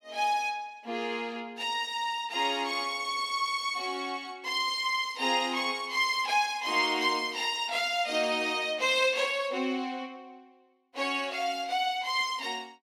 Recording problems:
none

